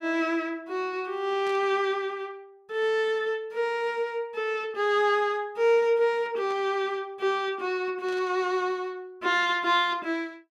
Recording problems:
static burst; at 1.5 s, at 6.5 s and at 8 s; peak -14 dB vs average level

